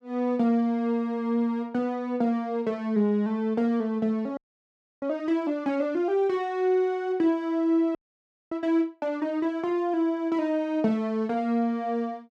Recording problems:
frozen audio; at 4.5 s for 0.5 s and at 8 s for 0.5 s

